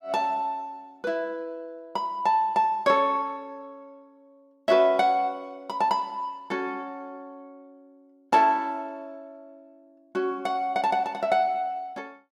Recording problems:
none

